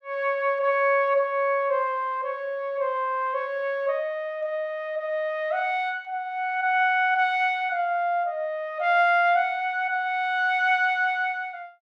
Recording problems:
none

